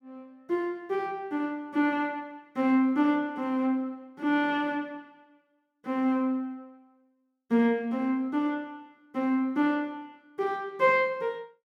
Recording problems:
none

